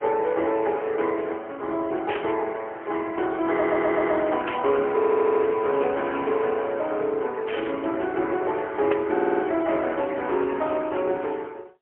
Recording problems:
phone line; 280 Hz to 3.3 kHz, AMR-NB, then MP3
static burst; 4 times, first at 2 s; peak -4 dB vs average level
stutter; at 3.5 s, at 5 s and at 9 s

